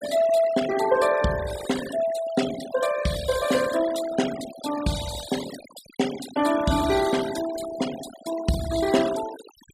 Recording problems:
denoising artefacts; signal-to-artefact ratio 12 dB

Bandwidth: 15.5 kHz